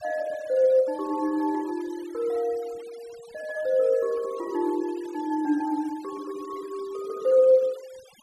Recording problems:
denoising artefacts; signal-to-artefact ratio 25 dB

